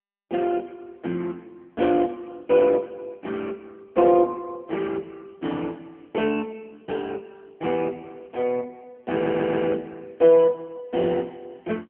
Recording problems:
telephone audio; 260 Hz to 3 kHz, AMR-NB
audio stuttering; at 9 s

